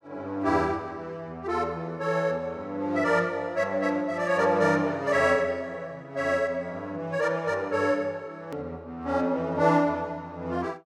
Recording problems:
click at an edit; at 8.5 s

